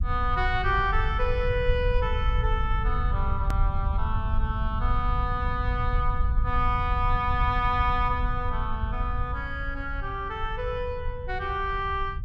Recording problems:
low-frequency rumble; below 78 Hz, SNR 1 dB
click at an edit; at 3.5 s

